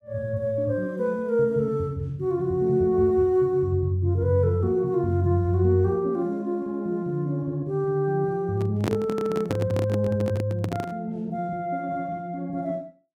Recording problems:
handling noise; from 8.5 to 11 s; peak +2 dB vs average level

